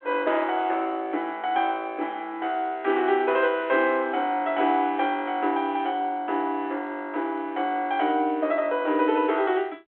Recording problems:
phone line; 260 Hz to 3.5 kHz, G.726

